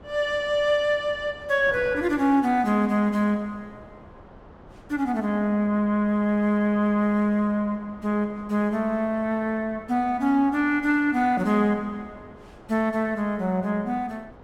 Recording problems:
wind noise; below 810 Hz, SNR 23 dB

